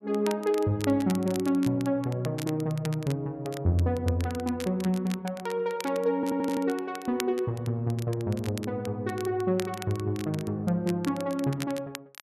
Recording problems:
crackle; vinyl, SNR 15 dB
audio stuttering; at 6 s

